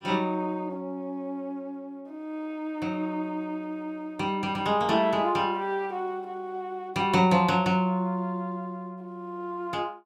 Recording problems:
none

